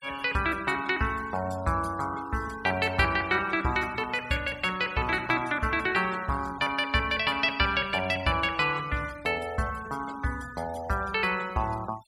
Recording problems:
noise reduction artefacts; signal-to-artefact ratio 21 dB

